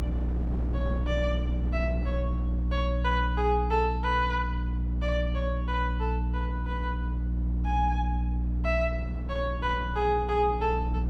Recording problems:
hum; 60 Hz, harmonics up to 300 Hz, SNR 0 dB
wind noise; below 400 Hz, SNR 13 dB

